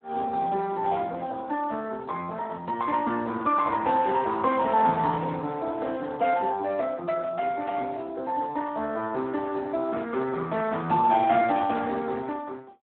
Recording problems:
phone line; 220 Hz to 3.2 kHz, Speex

